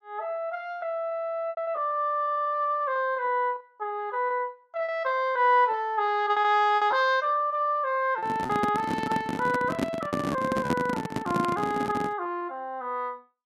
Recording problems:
packet loss; 9% of the sound replaced, filled with repeated pitch periods
stutter; at 2 s
handling noise; from 8 to 12 s; peak +3 dB vs average level

